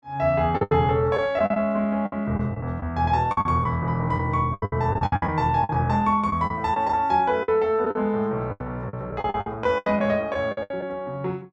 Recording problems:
lost packets; 13% of the sound replaced, filled with the last packet

